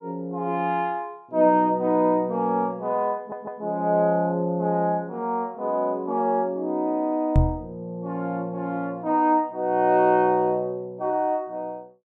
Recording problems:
stutter; at 3 s
microphone bump; at 7.5 s; peak +8 dB vs average level

